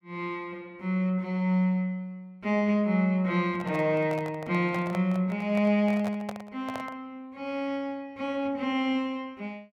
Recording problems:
microphone handling noise; from 3.5 to 7 s; peak -4 dB vs average level

